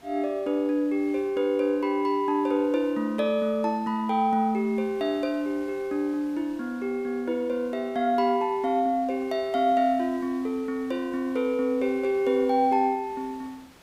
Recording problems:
background hiss; slope -4 dB per octave, SNR 26 dB

